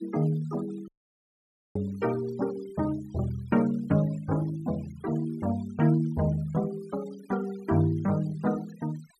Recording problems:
noise reduction artefacts; signal-to-artefact ratio 22 dB
audio cutting out; at 1 s for 1 s

